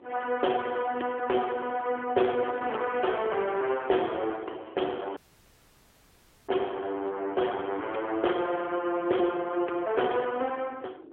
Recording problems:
phone line; 280 Hz to 3.3 kHz, AMR-NB
wind noise; below 450 Hz, SNR 19 dB
audio cutting out; at 5 s for 1.5 s

